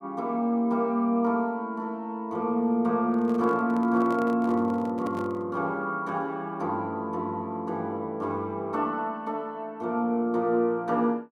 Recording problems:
microphone handling noise; from 3 to 5.5 s; peak -8 dB vs average level

